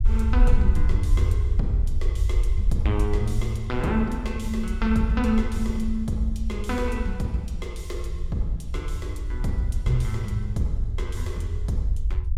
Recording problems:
low-frequency rumble; below 66 Hz, SNR 0 dB

